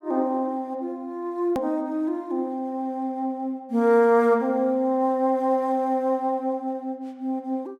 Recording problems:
click at an edit; at 1.5 s

